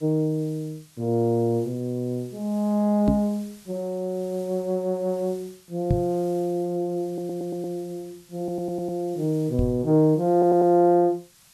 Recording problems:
background hiss; slope +2 dB per octave, SNR 27 dB
knock on the microphone; at 3 s, at 6 s and at 9.5 s; peak +5 dB vs average level
audio stuttering; at 7 s, at 8.5 s and at 10 s

